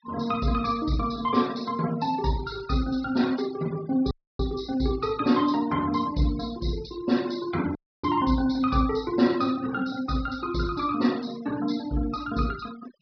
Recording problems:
treble cut off; nothing above 5.5 kHz
denoising artefacts; signal-to-artefact ratio 19 dB
dropout; at 4 s and at 8 s

